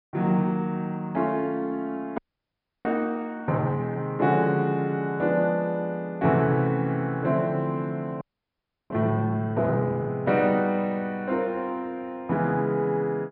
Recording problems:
treble missing; nothing above 5.5 kHz
frozen audio; at 2 s for 0.5 s and at 8 s for 0.5 s

